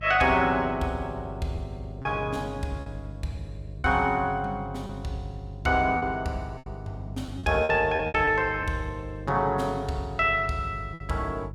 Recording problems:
hum; 50 Hz, harmonics up to 350 Hz, SNR 13 dB
packet loss; 5% of the sound replaced, filled with repeated pitch periods

